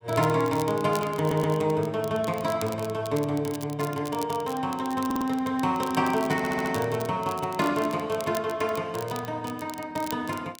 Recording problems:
crackle; vinyl, SNR 16 dB
stutter; at 1 s, at 5 s and at 6.5 s

